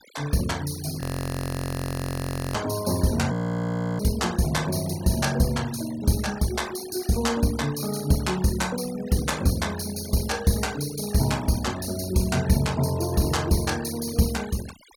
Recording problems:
noise reduction artefacts; signal-to-artefact ratio 16 dB
audio freezing; at 1 s for 1.5 s and at 3.5 s for 0.5 s

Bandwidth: 18 kHz